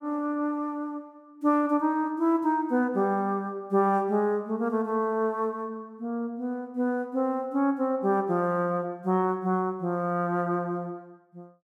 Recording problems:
none

